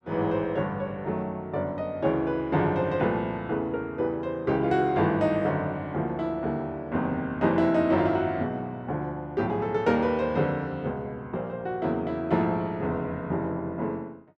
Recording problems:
none

